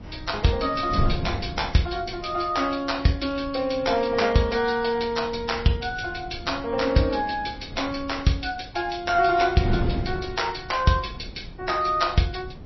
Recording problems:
lossy compression; MP3, log-spectral distance 5 dB, nothing above 5.7 kHz
wind noise; below 190 Hz, SNR 11 dB

